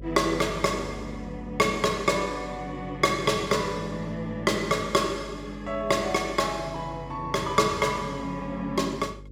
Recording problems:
electrical hum; 50 Hz, harmonics up to 550 Hz, SNR 17 dB

